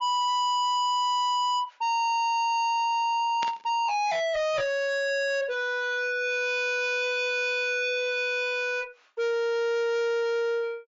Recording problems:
lossy compression; MP3, log-spectral distance 2 dB, nothing above 6.5 kHz
distortion; soft clipping, signal-to-distortion ratio 6 dB
static burst; at 3.5 s; peak -5 dB vs average level

